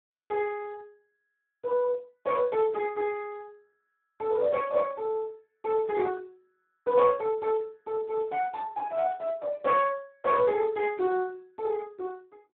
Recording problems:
phone line; 130 Hz to 2.8 kHz, Speex

